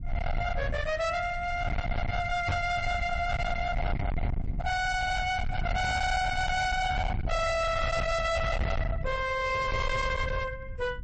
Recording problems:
codec artefacts; MP3, log-spectral distance 2 dB, nothing above 8.2 kHz
distortion; hard clipping, uneven, signal-to-distortion ratio 5 dB
rumble; below 410 Hz, SNR 5 dB
microphone thump; at 2.5 s; peak +3 dB vs average level

